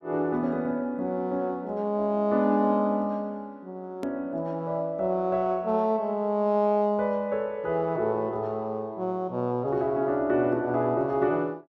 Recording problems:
hard cut with a click; at 4 s

